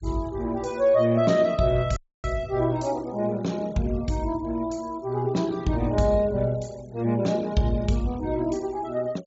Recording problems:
treble missing; nothing above 8 kHz
noise reduction artefacts; signal-to-artefact ratio 24 dB
dropout; at 2 s

